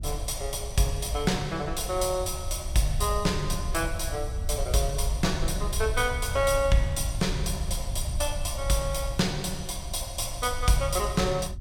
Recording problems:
rumble; below 76 Hz, SNR 7 dB

